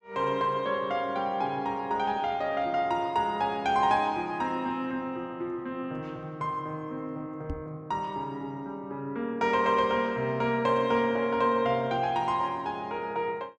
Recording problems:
microphone bump; at 7.5 s; peak -2 dB vs average level

